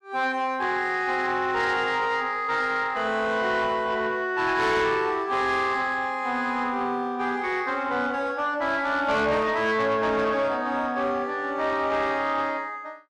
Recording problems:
distortion; soft clipping, signal-to-distortion ratio 12 dB

